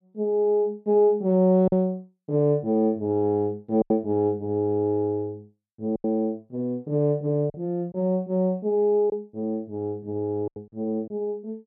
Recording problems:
lost packets; 4% of the sound replaced, filled with silence

